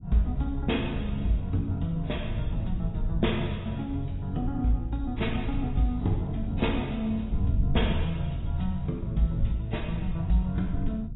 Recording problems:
lossy compression; AAC, log-spectral distance 4 dB, nothing above 3.7 kHz
low-frequency rumble; below 100 Hz, SNR 5 dB

